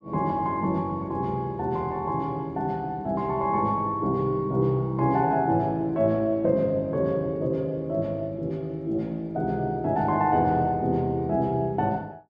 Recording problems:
none

